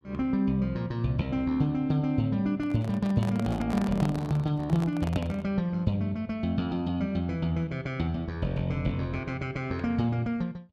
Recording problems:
microphone handling noise; from 2.5 to 5.5 s; peak -3 dB vs average level

